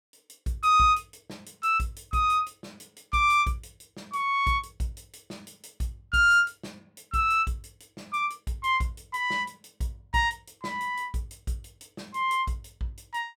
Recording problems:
none

